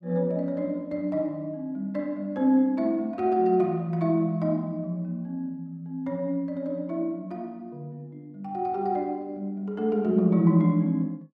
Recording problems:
none

